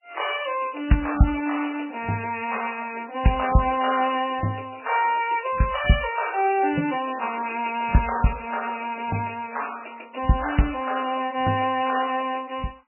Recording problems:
lossy codec; MP3, log-spectral distance 8 dB, nothing above 2.9 kHz

